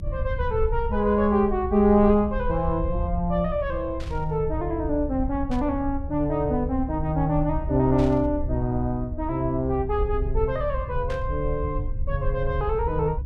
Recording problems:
low-frequency rumble; below 74 Hz, SNR 7 dB
static burst; 4 times, first at 4 s; peak -12 dB vs average level

